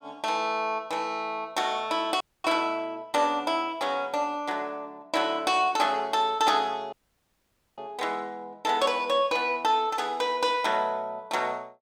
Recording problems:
dropout; at 2 s and at 7 s for 1 s

